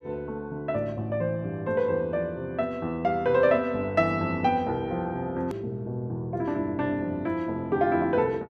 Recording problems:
edit click; at 5.5 s

